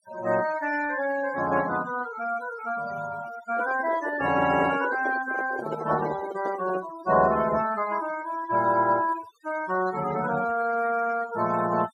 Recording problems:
denoising artefacts; signal-to-artefact ratio 13 dB
microphone handling noise; from 3.5 to 7 s; peak -2 dB vs average level

